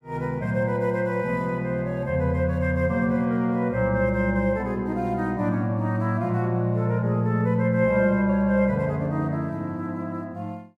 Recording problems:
none

